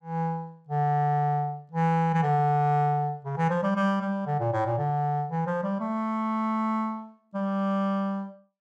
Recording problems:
none

